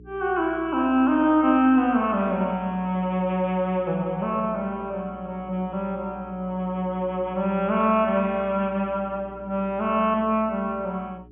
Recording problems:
low-pass filter; nothing above 3.4 kHz
electrical hum; 60 Hz, harmonics up to 420 Hz, SNR 22 dB

